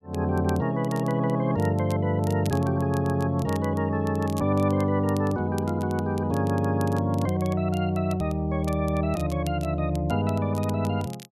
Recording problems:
crackle; vinyl, SNR 22 dB

